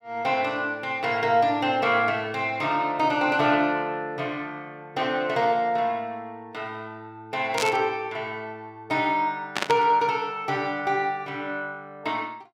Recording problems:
static burst; at 7.5 s and at 9.5 s; peak +3 dB vs average level

